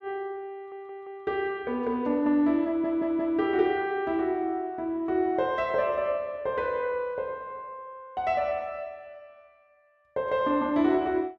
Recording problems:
audio stuttering; at 0.5 s and at 2.5 s

